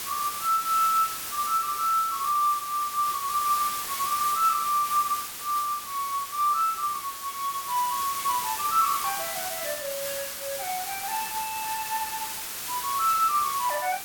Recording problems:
hiss; slope +1 dB per octave, SNR 5 dB

